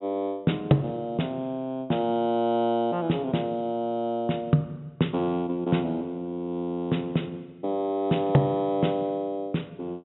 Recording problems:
low-pass filter; nothing above 3.9 kHz

